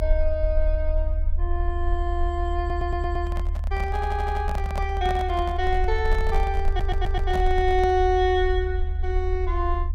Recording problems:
low-frequency rumble; below 74 Hz, SNR 1 dB
handling noise; from 2.5 to 8 s; peak -2 dB vs average level
stutter; at 2.5 s, at 4 s and at 6.5 s

